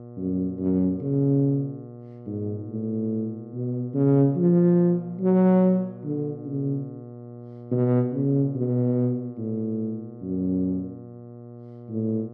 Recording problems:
mains hum; 60 Hz, harmonics up to 840 Hz, SNR 17 dB

